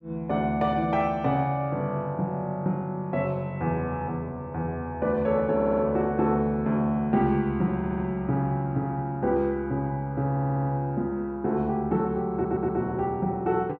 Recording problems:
stutter; 4 times, first at 5.5 s

